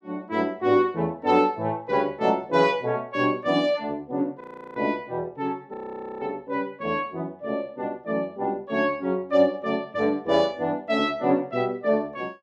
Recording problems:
frozen audio; at 4.5 s and at 5.5 s

